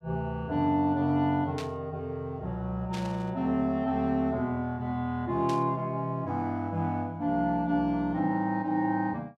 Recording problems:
static burst; at 1.5 s, at 3 s and at 5.5 s; peak -7 dB vs average level

